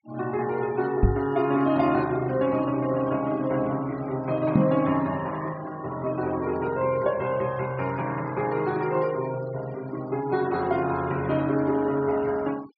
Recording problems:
low-pass filter; nothing above 5.5 kHz
noise reduction artefacts; signal-to-artefact ratio 21 dB
knock on the microphone; at 1 s and at 4.5 s; peak +9 dB vs average level

